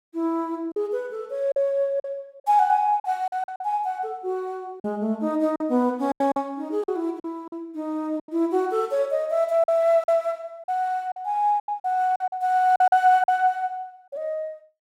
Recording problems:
packet loss; 8% of the sound replaced, filled with silence

